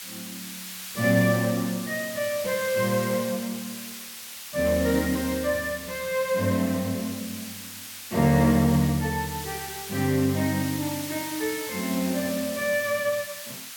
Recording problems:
hiss; slope +3 dB per octave, SNR 10 dB

